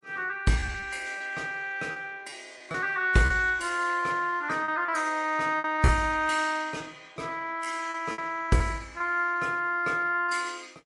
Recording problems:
lossy compression; MP3, then MP3, log-spectral distance 2 dB, nothing above 11 kHz
lost packets; 7% of the sound replaced, filled with repeated pitch periods

